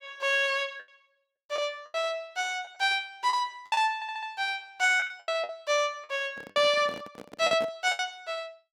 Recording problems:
packet loss; 8% of the sound replaced, filled with the last packet
stutter; at 4 s
microphone handling noise; from 6.5 to 7.5 s; peak -7 dB vs average level

